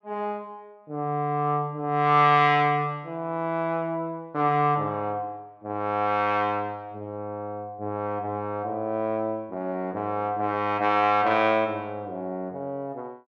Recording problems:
none

